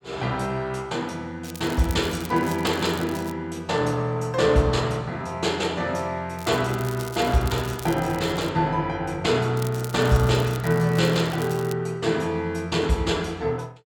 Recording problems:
crackling; from 1.5 to 3.5 s, from 6.5 to 8.5 s and from 9.5 to 12 s; loose cable, SNR 17 dB

